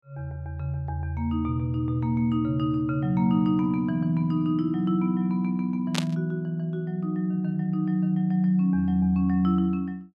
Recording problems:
static burst; at 6 s; peak +2 dB vs average level

